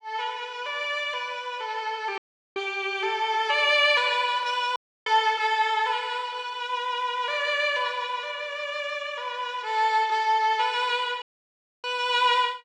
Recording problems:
audio cutting out; at 2 s, at 5 s and at 11 s for 0.5 s

